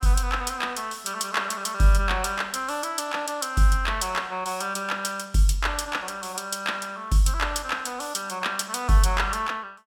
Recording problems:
none

